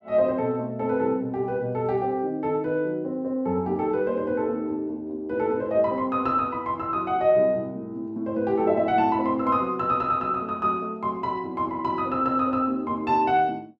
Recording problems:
none

